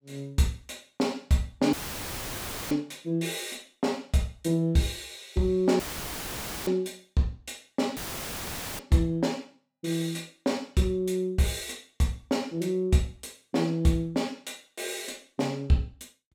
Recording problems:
audio cutting out; at 1.5 s for 1 s, at 6 s for 1 s and at 8 s for 1 s; filled with static

